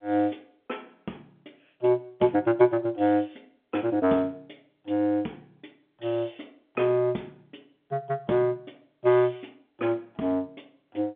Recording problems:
telephone audio; 170 Hz to 3.4 kHz, G.711

